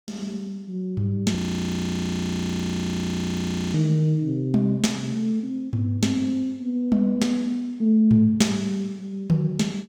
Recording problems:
audio freezing; at 1.5 s for 2.5 s

